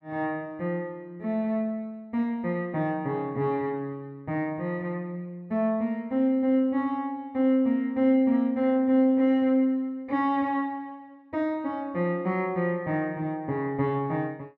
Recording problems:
none

